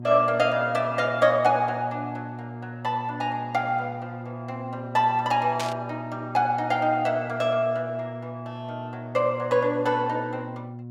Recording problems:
hum; 60 Hz, harmonics up to 720 Hz, SNR 12 dB
burst of static; at 5.5 s; peak -2 dB vs average level

